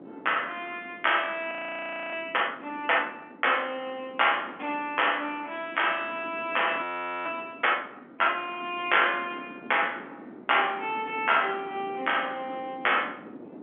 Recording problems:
telephone audio; 220 Hz to 3.4 kHz, G.711
wind noise; below 470 Hz, SNR 19 dB
audio freezing; at 1.5 s for 0.5 s and at 7 s

